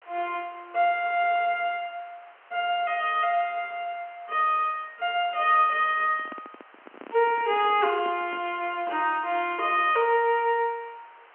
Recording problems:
telephone audio; 260 Hz to 3.1 kHz, G.711
hiss; SNR 27 dB
microphone handling noise; from 6 to 8.5 s; peak -12 dB vs average level

